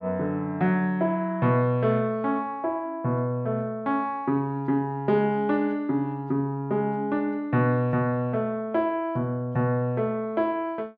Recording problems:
none

